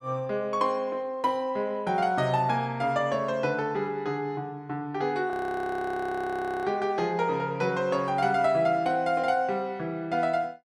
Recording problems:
audio freezing; at 5.5 s for 1.5 s

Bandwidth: 13.5 kHz